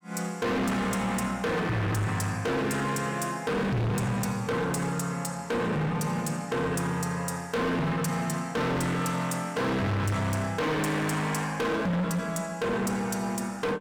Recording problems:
distortion; hard clipping, signal-to-distortion ratio 6 dB

